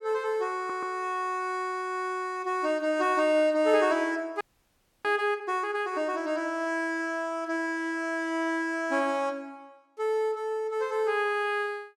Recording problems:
audio stuttering; at 0.5 s
audio freezing; at 4.5 s for 0.5 s

